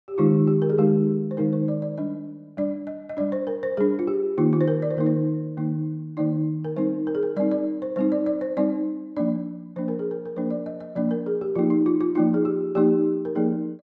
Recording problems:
none

